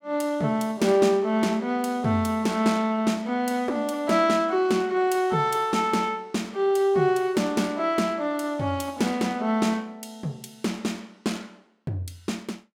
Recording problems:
none

